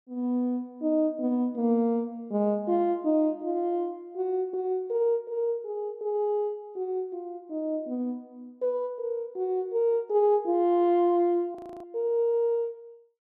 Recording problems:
frozen audio; at 12 s

